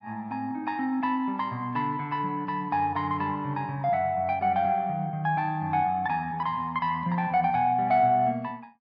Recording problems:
none

